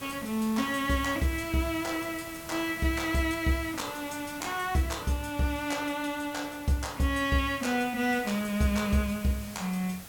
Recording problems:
background hiss; slope -2 dB per octave, SNR 14 dB

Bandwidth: 17 kHz